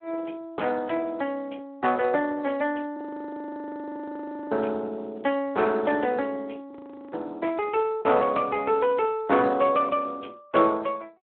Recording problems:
telephone audio; 260 Hz to 3.6 kHz, Speex
frozen audio; at 3 s for 1.5 s and at 6.5 s

